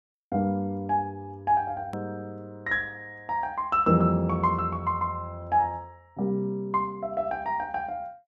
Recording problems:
hard cut with a click; at 2 s

